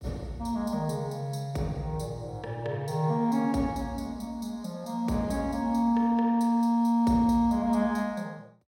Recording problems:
none

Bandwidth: 16 kHz